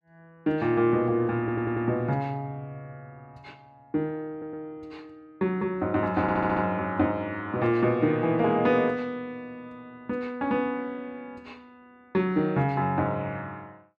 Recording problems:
audio stuttering; at 1.5 s, at 4.5 s and at 6 s

